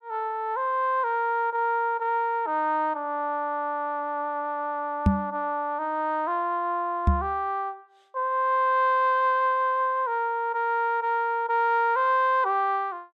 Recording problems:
knock on the microphone; at 5 s and at 7 s; peak +8 dB vs average level

